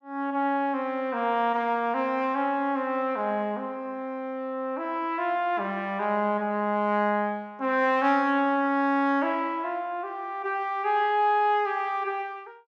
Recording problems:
none

